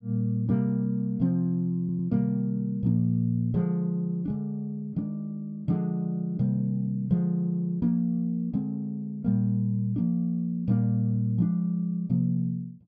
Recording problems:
stutter; at 2 s

